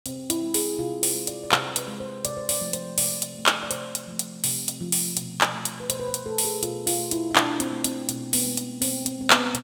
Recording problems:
none

